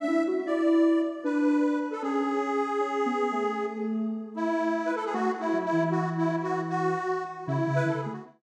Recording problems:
none

